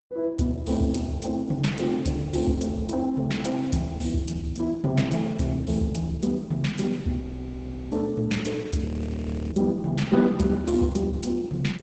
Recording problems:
codec artefacts; Opus, log-spectral distance 3 dB, nothing above 8 kHz
audio freezing; at 7 s for 0.5 s and at 9 s for 0.5 s

